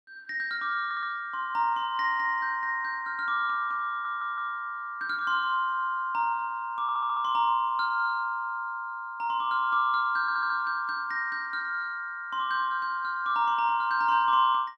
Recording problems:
stutter; 4 times, first at 1 s

